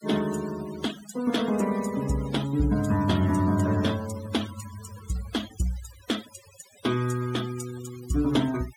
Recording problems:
denoising artefacts; signal-to-artefact ratio 15 dB

